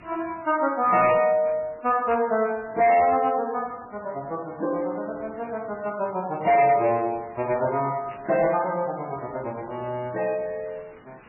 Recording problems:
lossy codec; MP3, log-spectral distance 7 dB
distorted audio; hard clipping, signal-to-distortion ratio 11 dB
hiss; SNR 25 dB
static burst; 4 times, first at 1.5 s; peak -12 dB vs average level

